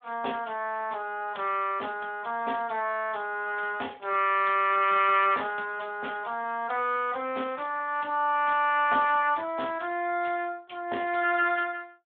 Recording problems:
phone line; 300 Hz to 3.4 kHz, Speex

